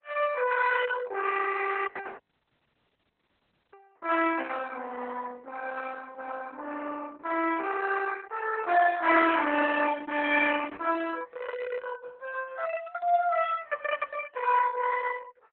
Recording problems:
lossy codec; Opus, log-spectral distance 5 dB
dropout; at 2 s for 1.5 s

